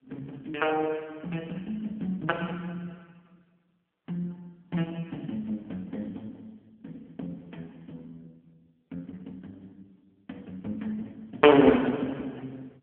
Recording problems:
phone line; 190 Hz to 3.2 kHz, AMR-NB

